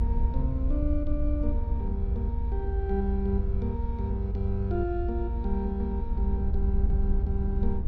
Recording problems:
low-frequency rumble; below 74 Hz, SNR -4 dB

